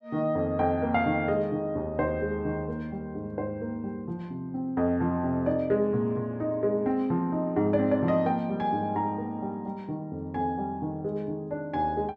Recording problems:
none

